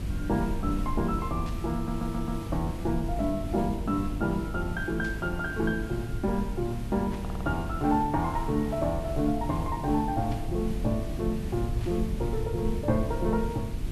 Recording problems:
mains hum; 50 Hz, harmonics up to 350 Hz, SNR 11 dB
hiss; slope -4 dB per octave, SNR 16 dB
rumble; below 98 Hz, SNR 7 dB
static burst; 5 times, first at 1.5 s; peak -12 dB vs average level
stutter; at 1.5 s and at 7 s

